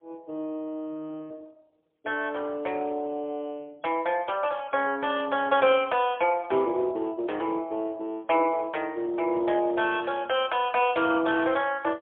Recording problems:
telephone audio; 300 Hz to 3.4 kHz, AMR-NB, then MP3

